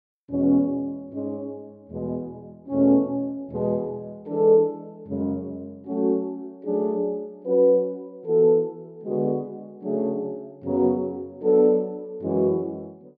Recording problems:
none

